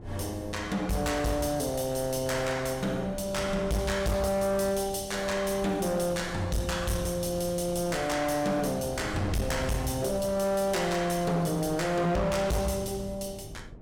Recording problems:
distortion; hard clipping, signal-to-distortion ratio 10 dB
wind noise; below 260 Hz, SNR 15 dB

